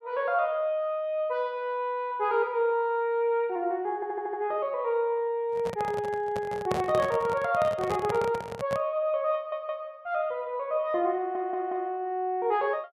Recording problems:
audio stuttering; at 4 s, at 9.5 s and at 11 s
handling noise; from 5.5 to 9 s; peak +1 dB vs average level

